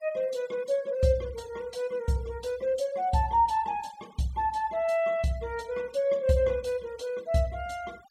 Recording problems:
noise reduction artefacts; signal-to-artefact ratio 24 dB

